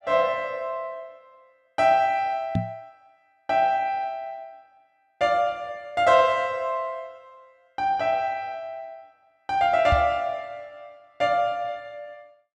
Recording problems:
microphone thump; at 2.5 s and at 10 s; peak +3 dB vs average level

